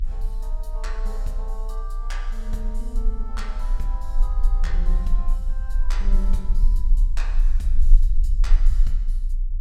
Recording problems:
rumble; below 34 Hz, strongest tone 30 Hz, SNR -13 dB

